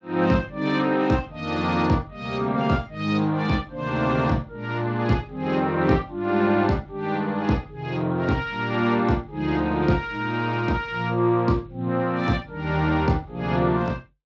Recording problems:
lossy compression; Speex, log-spectral distance 3 dB

